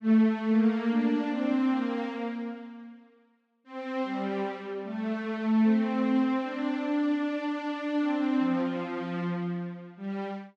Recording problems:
none

